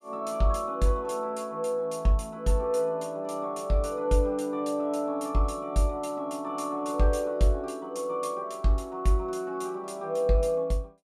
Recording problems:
none

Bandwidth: 14.5 kHz